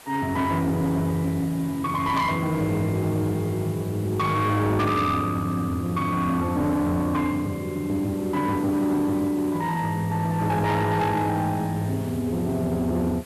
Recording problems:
distortion; soft clipping, signal-to-distortion ratio 10 dB
hiss; slope -3 dB per octave, SNR 20 dB

